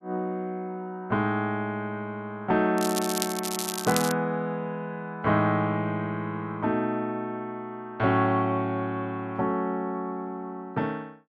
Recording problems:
crackle; from 3 to 4 s; loose cable, SNR 4 dB

